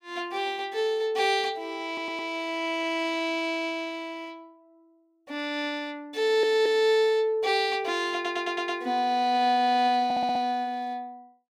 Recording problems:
audio stuttering; 4 times, first at 2 s

